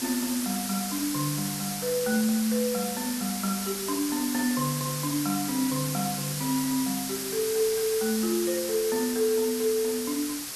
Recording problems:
background hiss; slope +1 dB per octave, SNR 3 dB

